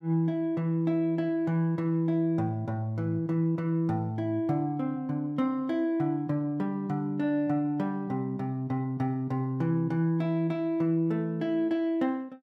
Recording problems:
none

